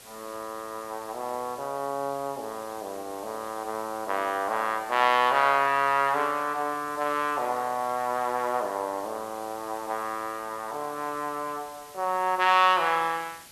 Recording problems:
background hiss; slope -1 dB per octave, SNR 19 dB

